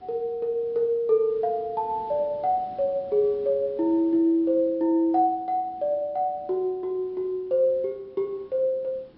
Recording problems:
treble missing; nothing above 5.4 kHz
hiss; SNR 27 dB

